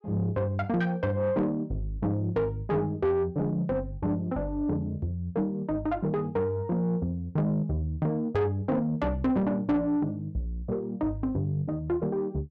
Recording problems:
distorted audio; soft clipping, signal-to-distortion ratio 12 dB

